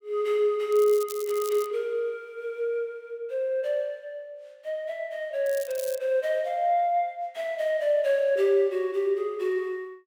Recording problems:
crackling; at 0.5 s and at 5.5 s; loose cable, SNR 15 dB

